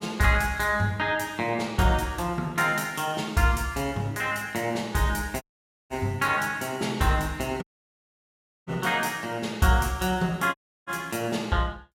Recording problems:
audio cutting out; at 5.5 s, at 7.5 s for 1 s and at 11 s

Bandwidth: 16 kHz